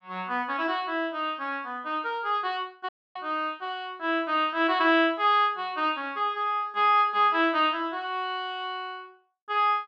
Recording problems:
audio cutting out; at 3 s

